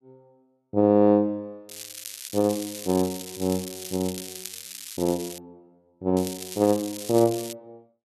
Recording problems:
crackle; from 1.5 to 5.5 s and from 6 to 7.5 s; loose cable, SNR 12 dB

